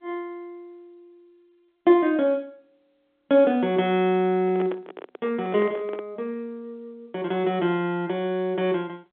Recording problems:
phone line; 220 Hz to 3.5 kHz, G.711
handling noise; from 4.5 to 6 s; peak -5 dB vs average level

